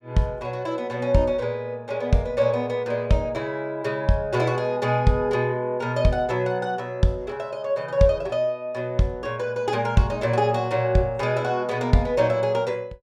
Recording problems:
none

